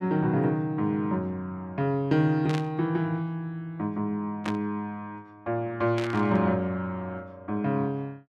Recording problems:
static burst; at 2.5 s, at 4.5 s and at 6 s; peak -3 dB vs average level

